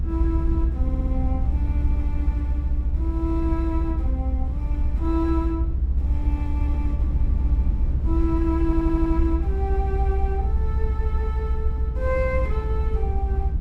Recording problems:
low-frequency rumble; below 68 Hz, SNR -5 dB
stutter; at 1 s and at 8.5 s

